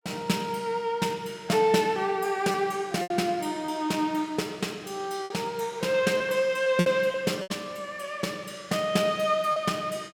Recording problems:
packet loss; 4% of the sound replaced, filled with repeated pitch periods

